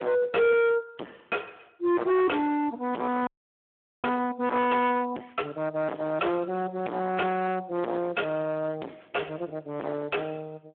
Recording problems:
phone line; 260 Hz to 2.5 kHz, Speex
distorted audio; hard clipping, signal-to-distortion ratio 2 dB
frozen audio; at 3.5 s for 1 s

